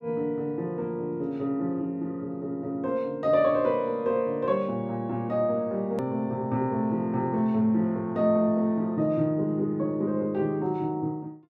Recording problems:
edit click; at 6 s

